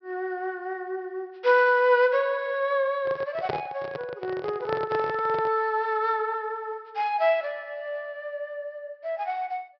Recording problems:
treble cut off; nothing above 5.5 kHz
handling noise; from 3 to 5.5 s; peak 0 dB vs average level

